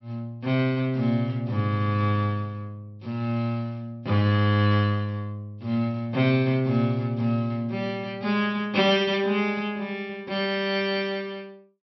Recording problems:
treble cut off; nothing above 5.6 kHz

